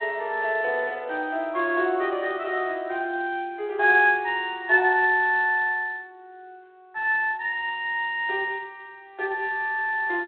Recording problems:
phone line; 300 Hz to 3.5 kHz, G.726

